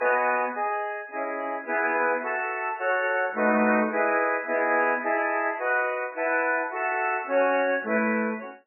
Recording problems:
lossy compression; MP3, log-spectral distance 4 dB, nothing above 2.5 kHz

